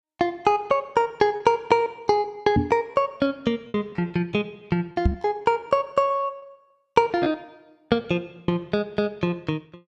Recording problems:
lost packets; 9% of the sound replaced, filled with repeated pitch periods
knock on the microphone; at 2.5 s and at 5 s; peak +7 dB vs average level

